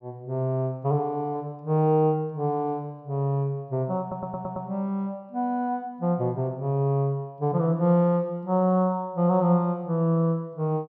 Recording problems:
stutter; at 4 s

